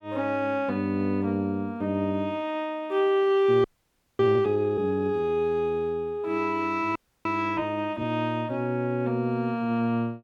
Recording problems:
audio freezing; at 3.5 s for 0.5 s and at 7 s

